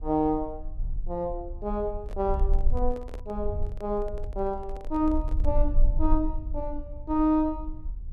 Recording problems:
rumble; below 46 Hz, strongest tone 20 Hz, SNR 4 dB
microphone handling noise; from 2 to 5.5 s; peak -9 dB vs average level

